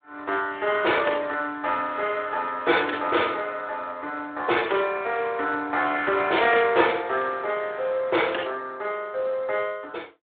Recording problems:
phone line; 300 Hz to 3.6 kHz, Speex

